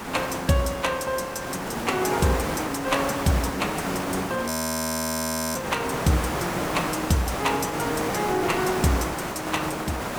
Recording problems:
hiss; SNR 2 dB
audio freezing; at 4.5 s for 1 s

